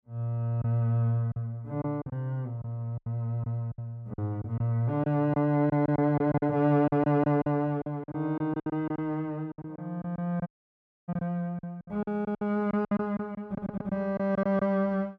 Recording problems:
lost packets; 11% of the sound replaced, filled with silence
audio cutting out; at 10 s for 0.5 s
stutter; at 13 s

